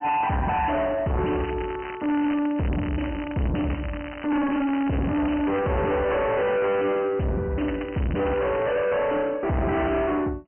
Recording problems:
treble cut off; nothing above 3 kHz
distortion; soft clipping, signal-to-distortion ratio 6 dB
crackle; from 1.5 to 5.5 s and from 7.5 to 9 s; loose cable, SNR 15 dB

